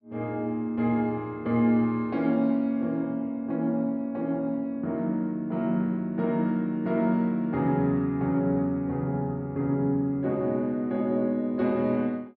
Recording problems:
treble cut off; nothing above 5.5 kHz

